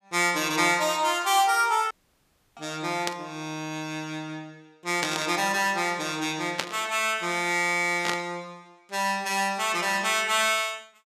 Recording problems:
dropout; at 2 s for 0.5 s
burst of static; 4 times, first at 3 s; peak +3 dB vs average level

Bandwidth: 15 kHz